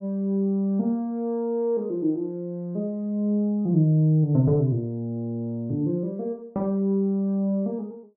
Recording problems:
none

